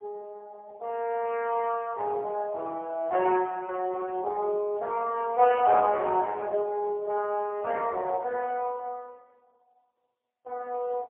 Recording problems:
telephone audio; 260 Hz to 3.2 kHz, AMR-NB, then MP3

